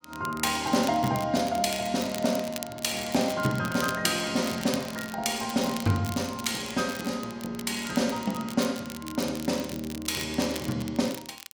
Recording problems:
crackling; vinyl, SNR 13 dB

